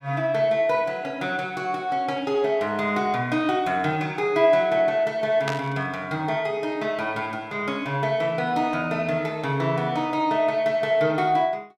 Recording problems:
burst of static; at 5.5 s; peak -1 dB vs average level

